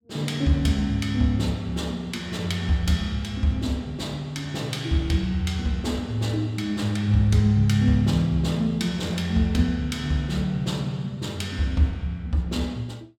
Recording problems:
none

